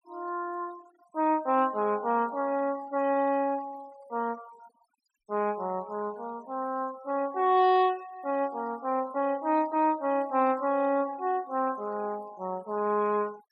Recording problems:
noise reduction artefacts; signal-to-artefact ratio 24 dB

